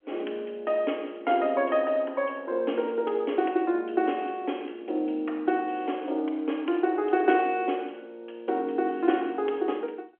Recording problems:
phone line; 240 Hz to 3.3 kHz, G.711

